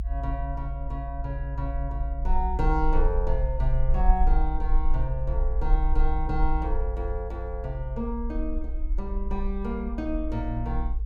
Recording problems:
rumble; below 56 Hz, strongest tone 24 Hz, SNR -2 dB

